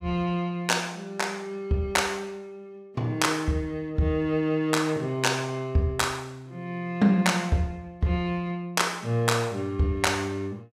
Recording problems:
none

